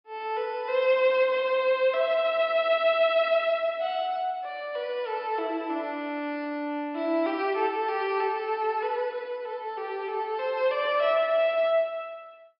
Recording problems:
treble cut off; nothing above 5.5 kHz

